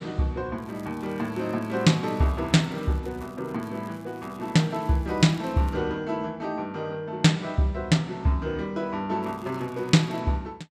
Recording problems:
crackling; from 0.5 to 3.5 s, from 3.5 to 6 s and at 9 s; loose cable, SNR 28 dB

